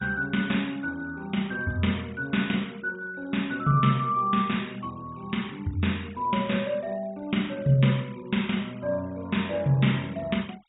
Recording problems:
low-pass filter; nothing above 4 kHz
denoising artefacts; signal-to-artefact ratio 25 dB

